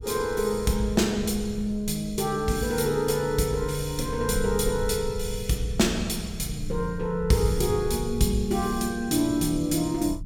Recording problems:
rumble; below 96 Hz, SNR 12 dB

